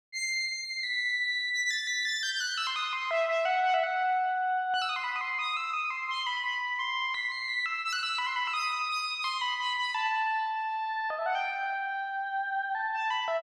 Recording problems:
none

